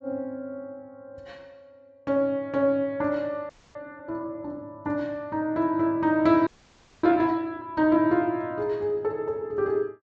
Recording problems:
treble cut off; nothing above 8 kHz
audio freezing; at 3.5 s and at 6.5 s for 0.5 s

